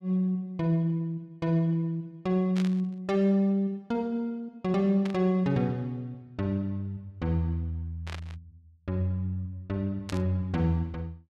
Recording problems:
burst of static; 4 times, first at 2.5 s; peak -6 dB vs average level

